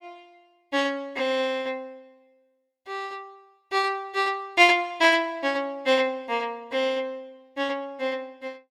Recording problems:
none

